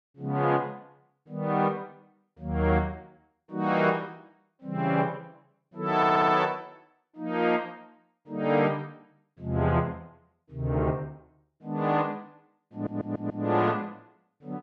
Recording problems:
audio stuttering; at 6 s and at 13 s

